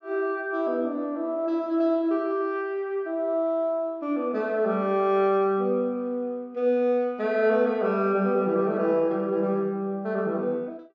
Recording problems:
none

